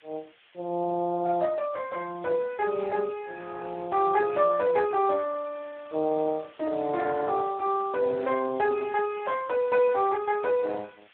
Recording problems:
telephone audio; 280 Hz to 3 kHz, Speex
background hiss; SNR 27 dB

